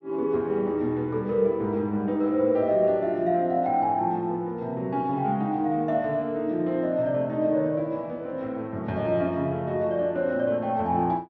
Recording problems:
low-pass filter; nothing above 6.4 kHz

